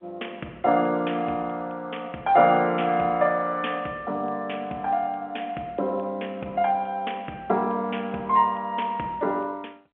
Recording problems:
phone line; 300 Hz to 3.3 kHz, G.711

